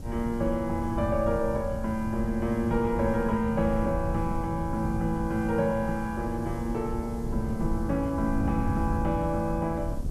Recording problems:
background hiss; SNR 26 dB
wind noise; below 130 Hz, SNR 6 dB

